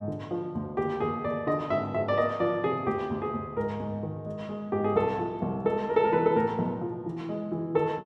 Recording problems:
none

